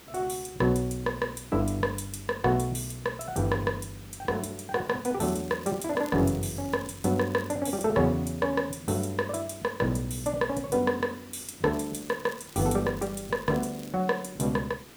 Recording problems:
hiss; SNR 20 dB
crackle; from 5 to 7.5 s and from 12 to 14 s; loose cable, SNR 21 dB

